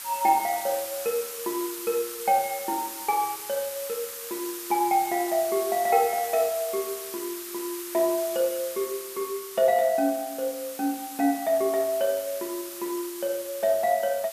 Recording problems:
background hiss; SNR 9 dB

